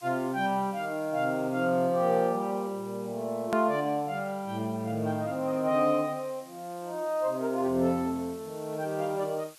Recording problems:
hiss; slope +1 dB per octave, SNR 23 dB
edit click; at 3.5 s

